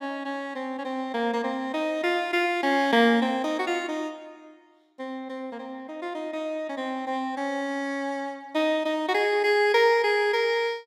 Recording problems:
none

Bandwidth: 16.5 kHz